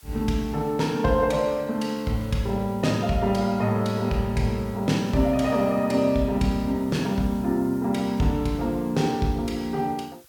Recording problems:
background hiss; SNR 27 dB

